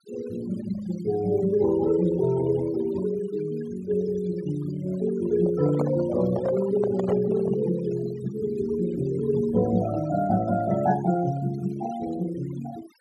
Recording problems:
denoising artefacts; signal-to-artefact ratio 16 dB
microphone handling noise; from 5.5 to 7.5 s; peak -1 dB vs average level

